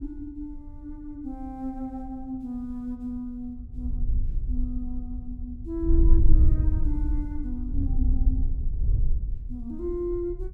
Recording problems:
wind on the microphone; below 60 Hz, SNR -7 dB

